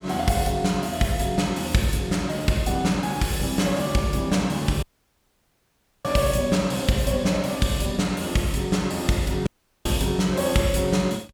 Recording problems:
dropout; at 5 s for 1 s and at 9.5 s

